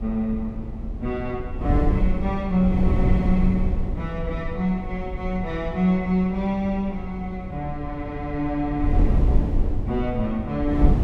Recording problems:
wind on the microphone; below 110 Hz, SNR 2 dB

